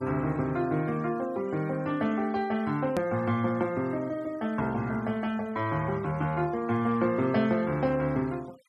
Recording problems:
denoising artefacts; signal-to-artefact ratio 24 dB
hard cut with a click; at 3 s

